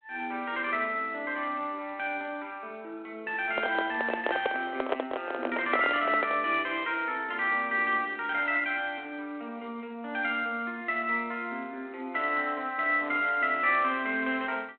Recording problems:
phone line; 220 Hz to 3.9 kHz, G.726
microphone handling noise; from 3.5 to 6.5 s; peak +4 dB vs average level

